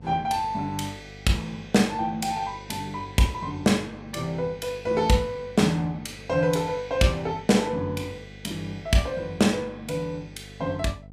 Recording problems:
hum; 50 Hz, harmonics up to 750 Hz, SNR 20 dB

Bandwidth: 15.5 kHz